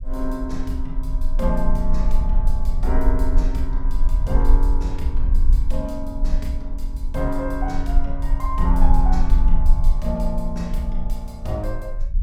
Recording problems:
rumble; below 40 Hz, strongest tone 20 Hz, SNR -4 dB

